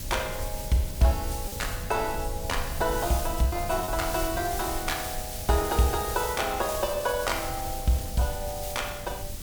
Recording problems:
background hiss; slope +5 dB per octave, SNR 8 dB
rumble; below 90 Hz, SNR 11 dB
wind on the microphone; below 220 Hz, SNR 18 dB
packet loss; 1.3% of the sound replaced, filled with repeated pitch periods

